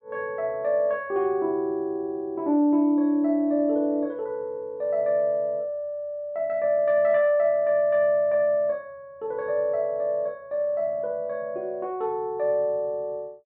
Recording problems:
none

